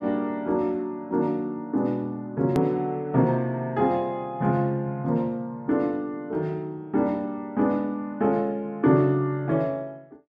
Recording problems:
hard cut with a click; at 2.5 s

